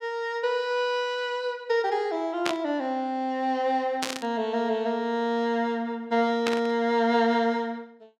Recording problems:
burst of static; at 2.5 s, at 4 s and at 6.5 s; peak +2 dB vs average level

